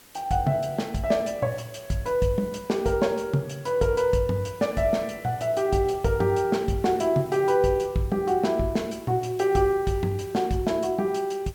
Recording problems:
background hiss; slope -2 dB per octave, SNR 25 dB

